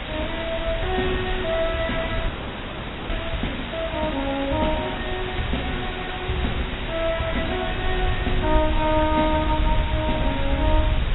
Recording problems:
lossy codec; AAC, log-spectral distance 12 dB, nothing above 3.8 kHz
hiss; SNR 5 dB
low-frequency rumble; below 74 Hz, SNR 5 dB
frozen audio; at 2.5 s for 1 s

